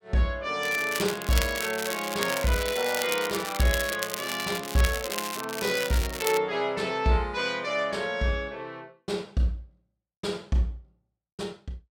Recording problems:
crackling; from 0.5 to 6.5 s; loose cable, SNR 5 dB

